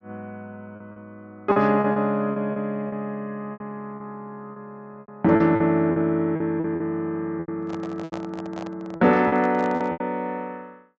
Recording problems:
treble missing; nothing above 8 kHz
lost packets; 11% of the sound replaced, filled with repeated pitch periods
handling noise; from 7.5 to 10 s; peak -8 dB vs average level

